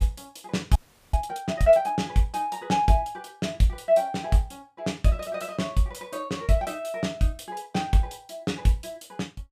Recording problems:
frozen audio; at 1 s

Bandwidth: 15 kHz